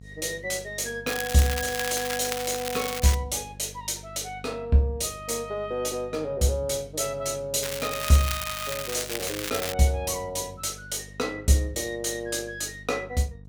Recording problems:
electrical hum; 50 Hz, harmonics up to 500 Hz, SNR 19 dB
crackle; from 1 to 3 s and from 7.5 to 9.5 s; loose cable, SNR 5 dB

